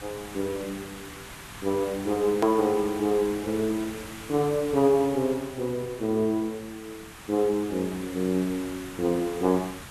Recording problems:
background hiss; SNR 14 dB
edit click; at 2.5 s

